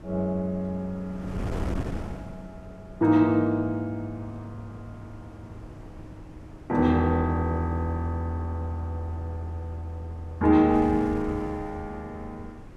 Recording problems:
wind noise; below 350 Hz, SNR 14 dB

